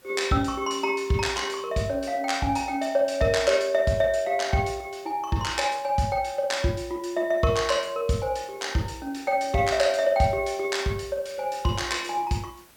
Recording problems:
hiss; slope -2 dB per octave, SNR 29 dB

